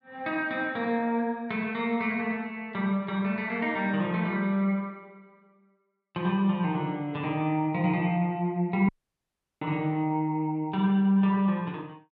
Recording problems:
dropout; at 9 s for 0.5 s

